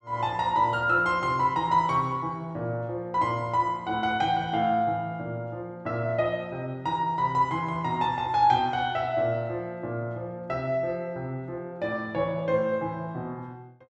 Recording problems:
none

